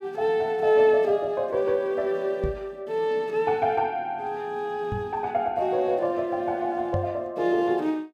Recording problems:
microphone thump; at 2.5 s, at 5 s and at 7 s; peak -1 dB vs average level

